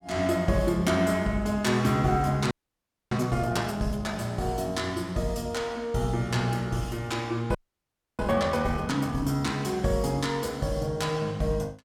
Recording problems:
audio freezing; at 2.5 s for 0.5 s and at 7.5 s for 0.5 s

